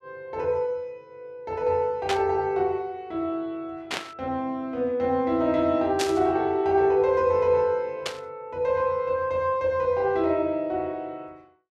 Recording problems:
static burst; 4 times, first at 2 s; peak +1 dB vs average level

